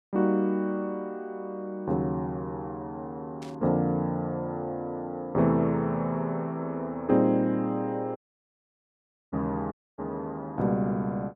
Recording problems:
burst of static; at 3.5 s; peak -15 dB vs average level
audio cutting out; at 8 s for 1 s and at 9.5 s

